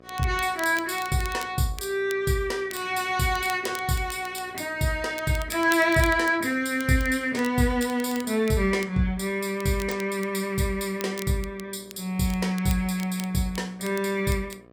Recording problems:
hum; 60 Hz, harmonics up to 1.9 kHz, SNR 27 dB
crackling; vinyl, SNR 17 dB

